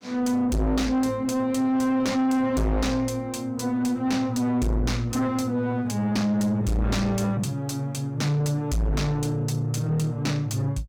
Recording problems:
distorted audio; soft clipping, signal-to-distortion ratio 6 dB

